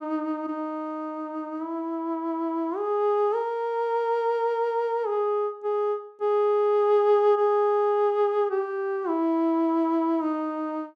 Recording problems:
none

